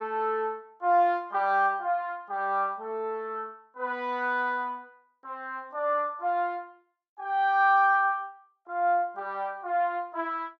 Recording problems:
none

